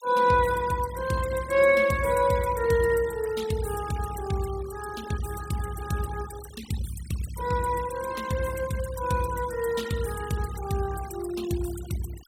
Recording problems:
noise reduction artefacts; signal-to-artefact ratio 17 dB

